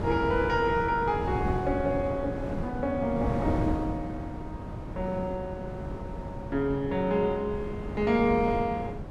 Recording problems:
wind on the microphone; below 340 Hz, SNR 6 dB

